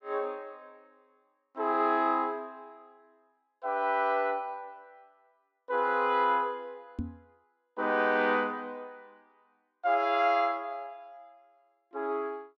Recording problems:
microphone bump; at 7 s; peak -2 dB vs average level

